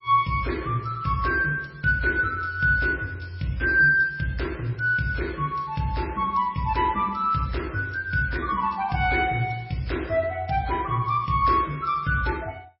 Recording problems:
lossy compression; MP3, log-spectral distance 3 dB, nothing above 5.3 kHz

